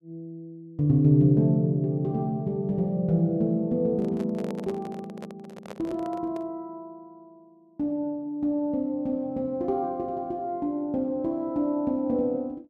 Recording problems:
handling noise; from 4 to 6.5 s; peak -8 dB vs average level

